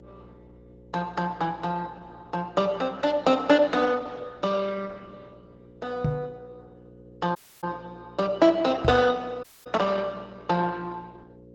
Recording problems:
lossy compression; Opus, log-spectral distance 3 dB
hum; 60 Hz, harmonics up to 540 Hz, SNR 24 dB
microphone bump; at 6 s and at 9 s; peak +4 dB vs average level
audio cutting out; at 7.5 s and at 9.5 s

